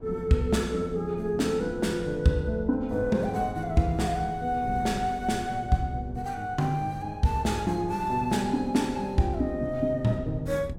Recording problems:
wind noise; below 170 Hz, SNR 15 dB

